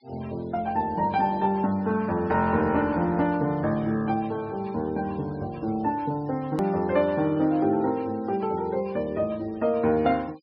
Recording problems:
low-pass filter; nothing above 5.4 kHz
noise reduction artefacts; signal-to-artefact ratio 26 dB
click at an edit; at 6.5 s

